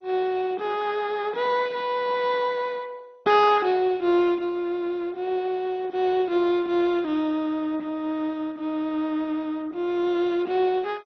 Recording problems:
codec artefacts; MP2, log-spectral distance 3 dB, nothing above 5.5 kHz

